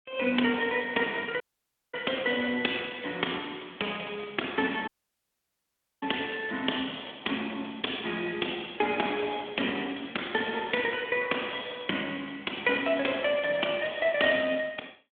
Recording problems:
telephone audio; 220 Hz to 3.5 kHz, Speex
dropout; at 1.5 s for 0.5 s and at 5 s for 1 s

